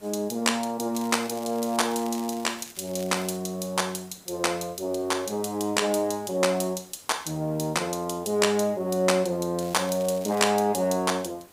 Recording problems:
hiss; slope -4 dB per octave, SNR 26 dB
crackling; from 1 to 2.5 s, at 3 s and at 9.5 s; loose cable, SNR 18 dB

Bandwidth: 15.5 kHz